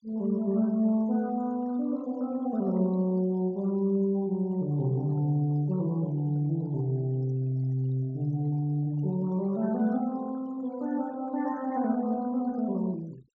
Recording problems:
low-pass filter; nothing above 7.7 kHz
noise reduction artefacts; signal-to-artefact ratio 25 dB

